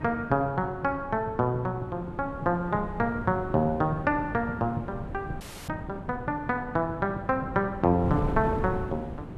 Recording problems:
wind noise; below 320 Hz, SNR 10 dB
audio freezing; at 5.5 s

